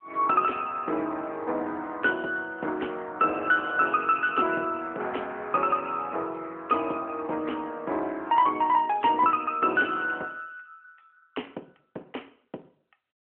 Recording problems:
phone line; 280 Hz to 3.1 kHz, AMR-NB

